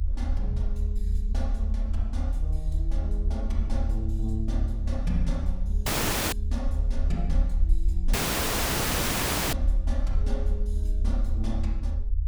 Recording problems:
rumble; below 72 Hz, strongest tone 40 Hz, SNR -8 dB
audio cutting out; at 6 s and at 8 s for 1.5 s

